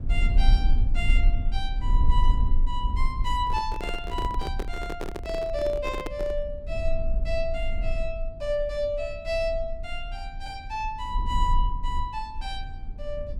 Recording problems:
rumble; below 46 Hz, SNR -1 dB
handling noise; from 3.5 to 6.5 s; peak +1 dB vs average level

